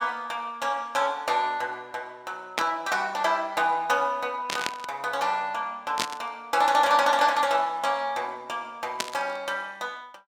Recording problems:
static burst; 4 times, first at 2.5 s; peak +4 dB vs average level

